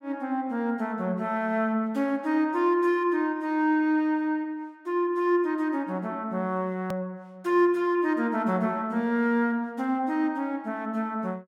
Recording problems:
click at an edit; at 7 s

